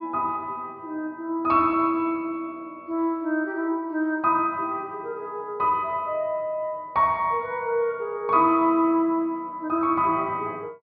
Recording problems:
treble missing; nothing above 5.1 kHz

